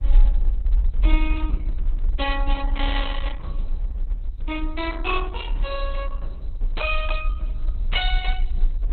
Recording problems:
lossy codec; Opus, log-spectral distance 2 dB, nothing above 4 kHz
low-frequency rumble; below 44 Hz, strongest tone 28 Hz, SNR -2 dB

